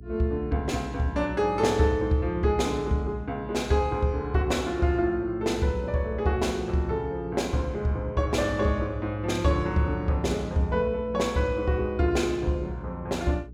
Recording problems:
electrical hum; 60 Hz, harmonics up to 420 Hz, SNR 15 dB

